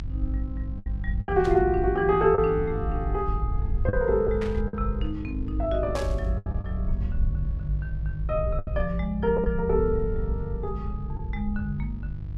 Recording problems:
hum; 50 Hz, harmonics up to 350 Hz, SNR 11 dB
low-frequency rumble; below 64 Hz, SNR 4 dB
lost packets; 4% of the sound replaced, filled with the last packet
burst of static; at 1.5 s, at 4.5 s and at 6 s; peak -7 dB vs average level

